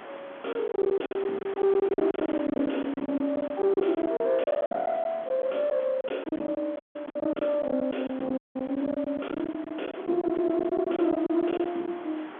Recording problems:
phone line; 170 Hz to 3.4 kHz, G.711
distortion; soft clipping, signal-to-distortion ratio 8 dB
wind noise; below 1.6 kHz, SNR 17 dB
lost packets; 16% of the sound replaced, filled with silence
audio cutting out; at 7 s and at 8.5 s

